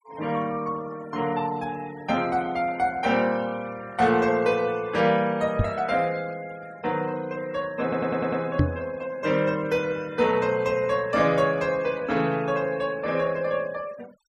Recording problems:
denoising artefacts; signal-to-artefact ratio 23 dB
microphone thump; at 5.5 s and at 8.5 s; peak +8 dB vs average level
audio stuttering; at 8 s

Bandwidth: 14.5 kHz